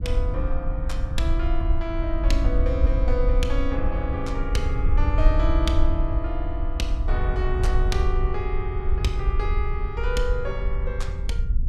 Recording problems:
wind noise; below 60 Hz, SNR -4 dB

